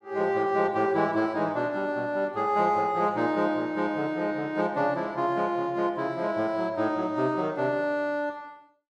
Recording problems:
none

